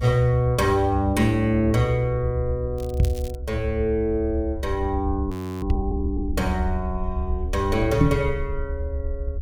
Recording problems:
low-frequency rumble; below 74 Hz, SNR 6 dB
crackling; at 3 s; loose cable, SNR 20 dB
knock on the microphone; at 3 s, at 5.5 s and at 8 s; peak +8 dB vs average level
frozen audio; at 5.5 s

